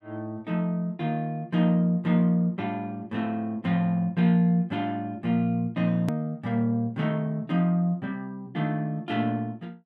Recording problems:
edit click; at 6 s

